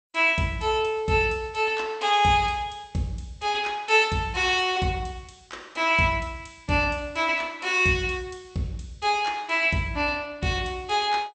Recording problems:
lossy codec; MP2, log-spectral distance 3 dB, nothing above 8.5 kHz

